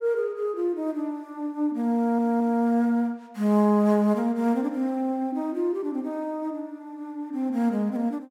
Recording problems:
stutter; at 2 s

